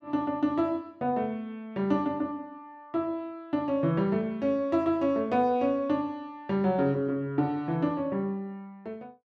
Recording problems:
none

